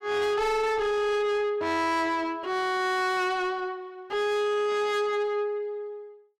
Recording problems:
distortion; soft clipping, signal-to-distortion ratio 7 dB

